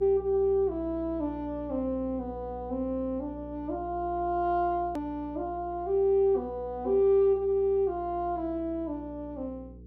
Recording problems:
electrical hum; 60 Hz, harmonics up to 480 Hz, SNR 17 dB
click at an edit; at 5 s

